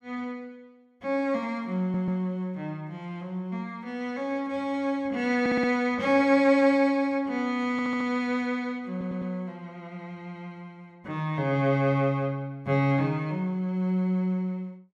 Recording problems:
audio stuttering; 4 times, first at 2 s

